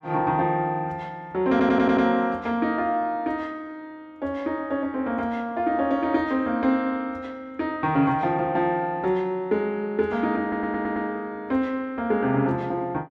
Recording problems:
stutter; at 1.5 s and at 10 s

